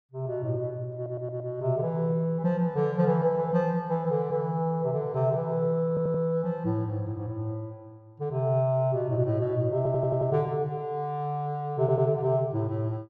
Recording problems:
stutter; 4 times, first at 1 s

